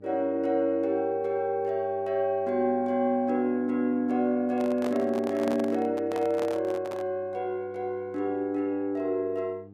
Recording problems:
hum; 50 Hz, harmonics up to 800 Hz, SNR 23 dB
handling noise; from 4.5 to 7 s; peak -4 dB vs average level

